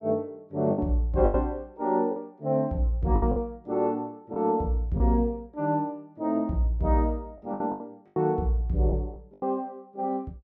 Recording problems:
lost packets; 7% of the sound replaced, filled with the last packet

